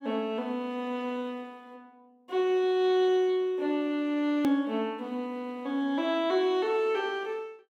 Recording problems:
edit click; at 4.5 s

